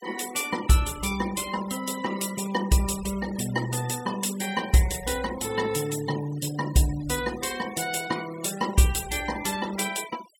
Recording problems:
noise reduction artefacts; signal-to-artefact ratio 14 dB

